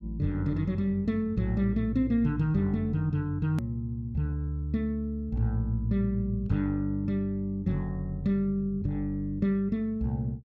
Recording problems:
hard cut with a click; at 3.5 s

